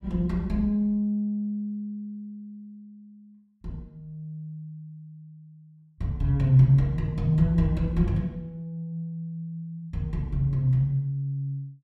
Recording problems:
none

